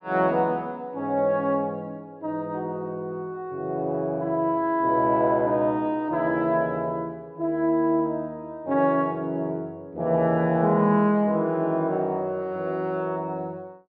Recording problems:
treble missing; nothing above 5.5 kHz

